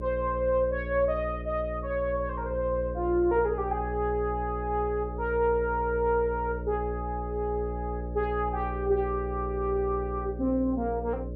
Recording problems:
electrical hum; 60 Hz, harmonics up to 600 Hz, SNR 7 dB

